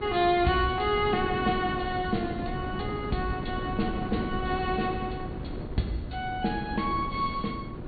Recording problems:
low-pass filter; nothing above 4.5 kHz
hum; 60 Hz, harmonics up to 1.2 kHz, SNR 20 dB
wind noise; below 320 Hz, SNR 7 dB

